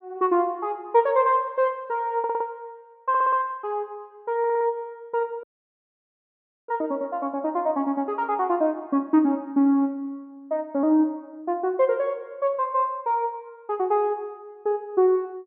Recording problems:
audio stuttering; at 2 s, at 3 s and at 4.5 s
audio cutting out; at 5.5 s for 1.5 s

